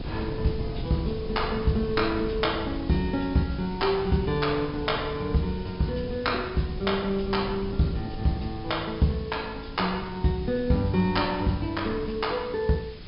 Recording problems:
treble missing; nothing above 5.5 kHz
background hiss; slope 0 dB per octave, SNR 20 dB
wind noise; below 220 Hz, SNR 11 dB

